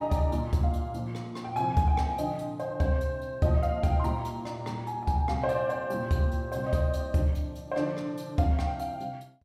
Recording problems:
none

